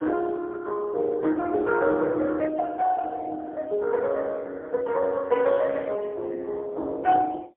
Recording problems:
telephone audio; 220 Hz to 2.5 kHz, AMR-NB, then MP3

